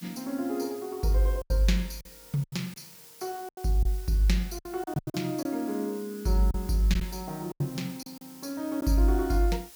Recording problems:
hiss; slope 0 dB per octave, SNR 18 dB
lost packets; 8% of the sound replaced, filled with silence

